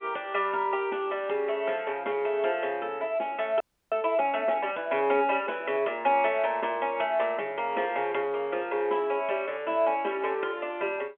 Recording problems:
phone line; 280 Hz to 3.4 kHz, G.711
frozen audio; at 3.5 s

